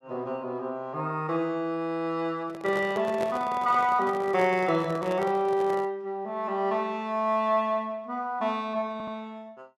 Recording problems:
microphone handling noise; from 2.5 to 6 s; peak -4 dB vs average level
audio stuttering; at 9 s

